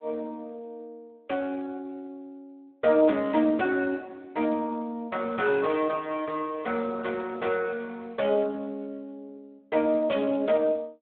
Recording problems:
telephone audio; 240 Hz to 3.5 kHz, Speex

